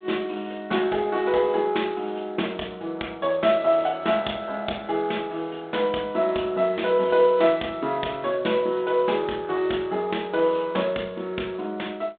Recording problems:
telephone audio; 220 Hz to 3.8 kHz, G.726

